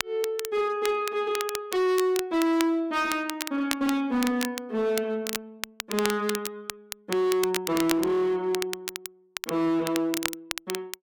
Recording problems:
distortion; hard clipping, signal-to-distortion ratio 6 dB
crackle; vinyl, SNR 8 dB

